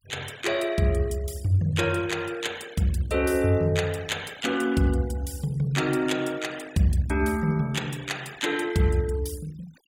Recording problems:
noise reduction artefacts; signal-to-artefact ratio 20 dB

